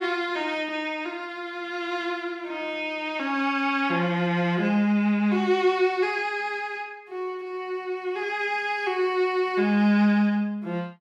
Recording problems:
none

